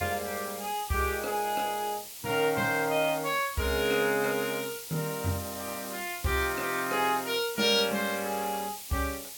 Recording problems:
hiss; SNR 9 dB

